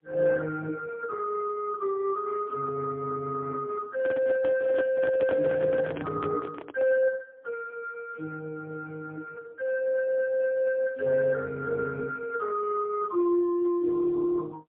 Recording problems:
telephone audio; 540 Hz to 2.3 kHz, AMR-NB, then MP3
microphone handling noise; from 4 to 7 s; peak -3 dB vs average level

